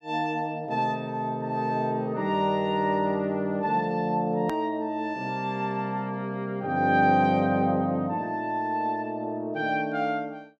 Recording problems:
click at an edit; at 4.5 s

